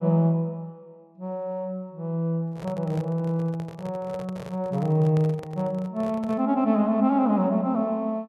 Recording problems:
handling noise; from 2.5 to 6.5 s; peak -7 dB vs average level

